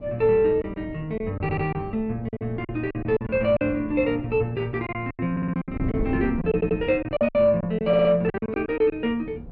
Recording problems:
low-pass filter; nothing above 8 kHz
wind on the microphone; below 260 Hz, SNR 13 dB
lost packets; 12% of the sound replaced, filled with silence
stutter; 4 times, first at 1.5 s

